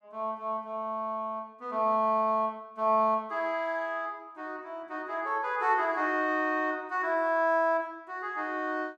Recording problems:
none

